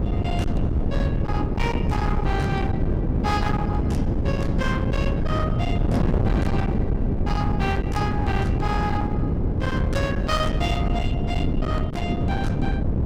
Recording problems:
distortion; hard clipping, signal-to-distortion ratio 7 dB
mains hum; 50 Hz, harmonics up to 450 Hz, SNR 9 dB
wind noise; below 240 Hz, SNR -4 dB

